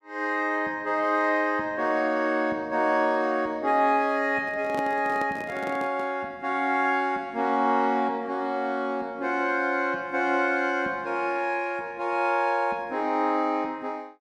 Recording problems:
handling noise; from 4.5 to 6 s; peak -4 dB vs average level

